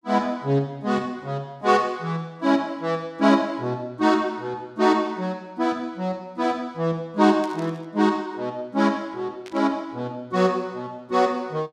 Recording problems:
static burst; at 7.5 s and at 9.5 s; peak -13 dB vs average level

